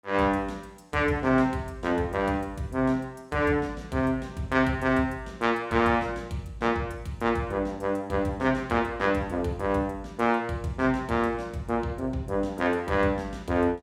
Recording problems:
none

